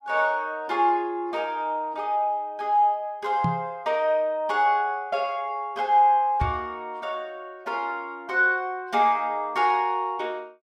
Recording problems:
microphone thump; at 3.5 s and at 6.5 s; peak +1 dB vs average level

